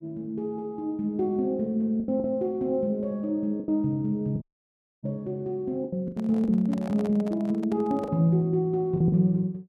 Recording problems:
packet loss; 6% of the sound replaced, filled with the last packet
audio cutting out; at 4.5 s for 0.5 s
microphone handling noise; from 6 to 8 s; peak -10 dB vs average level

